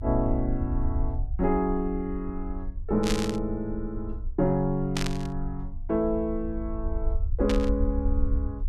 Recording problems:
rumble; below 62 Hz, strongest tone 24 Hz, SNR 5 dB
static burst; at 3 s, at 5 s and at 7.5 s; peak +2 dB vs average level

